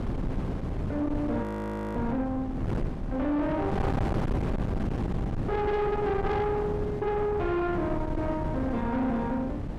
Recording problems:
distortion; soft clipping, signal-to-distortion ratio 6 dB
wind on the microphone; below 370 Hz, SNR 3 dB
audio freezing; at 1.5 s for 0.5 s

